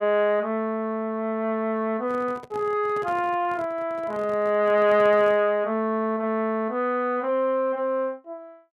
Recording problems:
microphone handling noise; from 2 to 5.5 s; peak -13 dB vs average level

